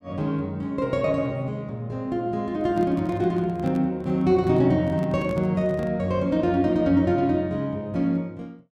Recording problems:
handling noise; from 2.5 to 6 s; peak -5 dB vs average level

